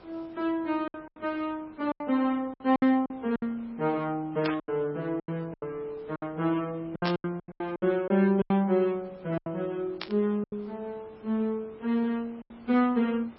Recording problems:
lossy codec; MP3, log-spectral distance 2 dB
hiss; SNR 25 dB
packet loss; 11% of the sound replaced, filled with silence
burst of static; at 4.5 s, at 7 s and at 10 s; peak -1 dB vs average level

